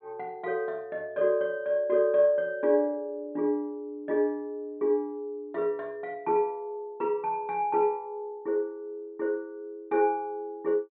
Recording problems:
treble missing; nothing above 4.3 kHz

